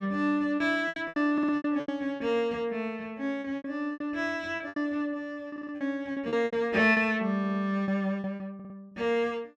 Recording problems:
packet loss; 13% of the sound replaced, filled with repeated pitch periods
stutter; 4 times, first at 1.5 s

